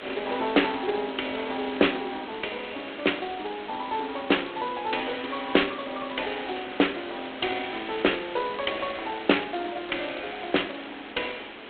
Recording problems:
telephone audio; 240 Hz to 3.7 kHz, G.726
hiss; SNR 12 dB

